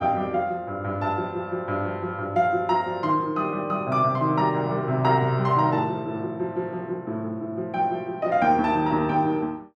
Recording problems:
none

